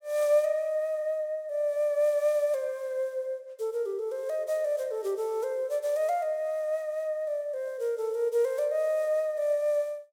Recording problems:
none

